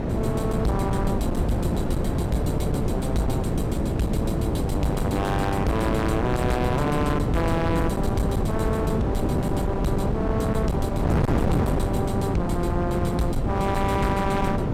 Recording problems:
distorted audio; hard clipping, signal-to-distortion ratio 7 dB
wind on the microphone; below 350 Hz, SNR -2 dB

